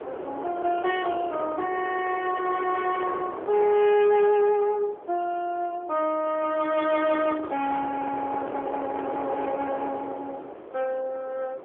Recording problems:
telephone audio; 320 Hz to 3.3 kHz, AMR-NB
distortion; soft clipping, signal-to-distortion ratio 13 dB
wind on the microphone; below 820 Hz, SNR 10 dB

